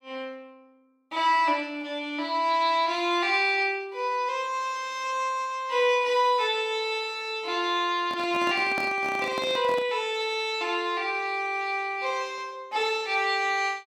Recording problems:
handling noise; from 8 to 10 s; peak -4 dB vs average level

